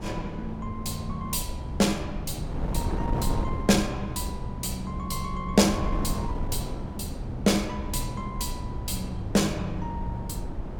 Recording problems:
wind noise; below 220 Hz, SNR 5 dB

